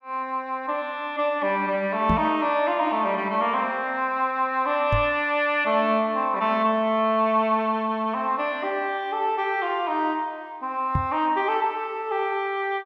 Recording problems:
microphone thump; at 2 s, at 5 s and at 11 s; peak +2 dB vs average level

